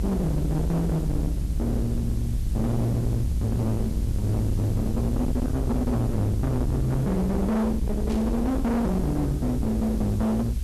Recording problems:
distorted audio; hard clipping, signal-to-distortion ratio 6 dB
hiss; slope +1 dB per octave, SNR 23 dB
rumble; below 160 Hz, SNR 3 dB
static burst; at 8 s; peak -15 dB vs average level

